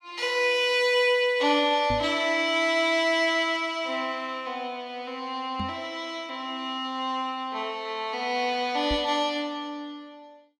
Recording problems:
microphone thump; at 2 s, at 5.5 s and at 9 s; peak -3 dB vs average level

